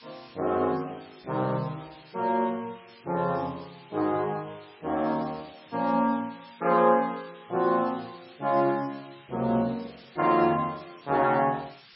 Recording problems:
lossy codec; MP3, log-spectral distance 15 dB, nothing above 4.5 kHz
hiss; SNR 24 dB

